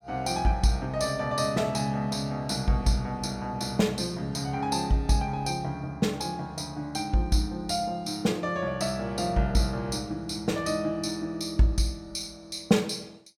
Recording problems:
none

